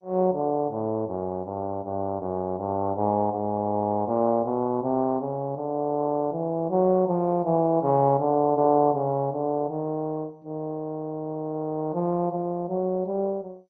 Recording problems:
lossy compression; MP2, log-spectral distance 2 dB

